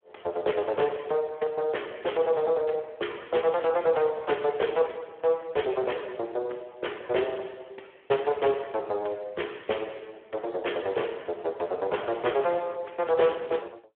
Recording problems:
phone line; 340 Hz to 3.3 kHz, Speex

